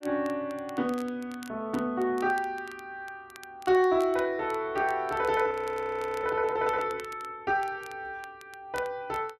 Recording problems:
crackling; vinyl, SNR 23 dB
frozen audio; at 5.5 s for 0.5 s

